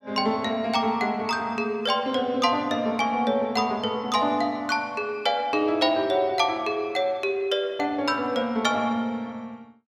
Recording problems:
none

